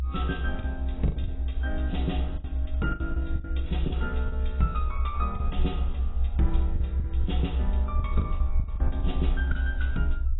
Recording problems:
lossy compression; AAC, log-spectral distance 2 dB, nothing above 3.8 kHz
low-frequency rumble; below 68 Hz, SNR -5 dB
lost packets; 11% of the sound replaced, filled with the last packet

